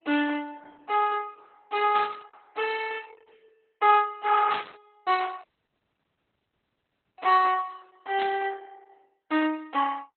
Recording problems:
lossy compression; Opus, log-spectral distance 4 dB, nothing above 4.1 kHz
burst of static; at 2 s, at 4.5 s and at 8 s; peak -9 dB vs average level
dropout; at 5.5 s for 1.5 s

